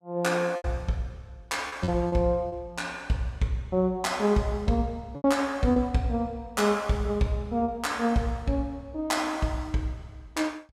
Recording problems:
packet loss; 4% of the sound replaced, filled with repeated pitch periods

